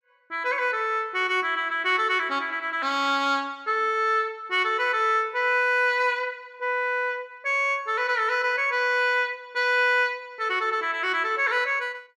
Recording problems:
none

